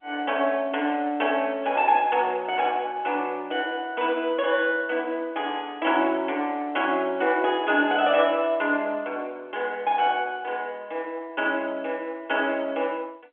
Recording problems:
telephone audio; 220 Hz to 3.4 kHz, G.711

